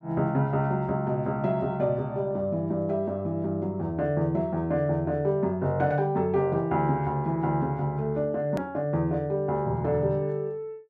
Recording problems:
hard cut with a click; at 8.5 s

